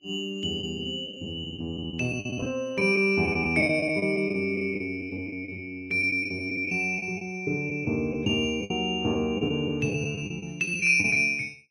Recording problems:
codec artefacts; Vorbis, log-spectral distance 2 dB, nothing above 9.5 kHz
packet loss; 11% of the sound replaced, filled with the last packet

